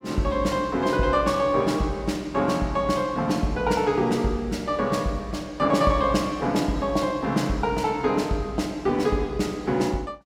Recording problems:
none

